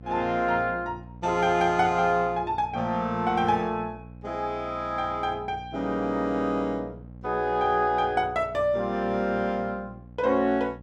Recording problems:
electrical hum; 60 Hz, harmonics up to 840 Hz, SNR 18 dB

